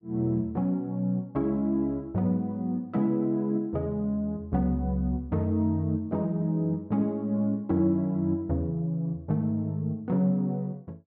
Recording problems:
none

